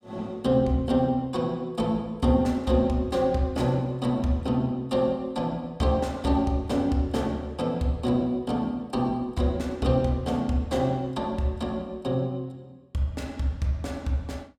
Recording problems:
none

